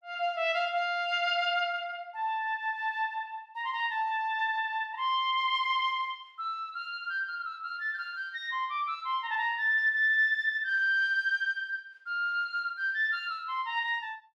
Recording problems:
none

